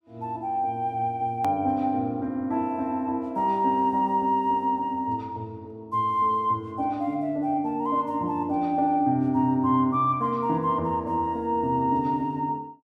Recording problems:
click at an edit; at 1.5 s

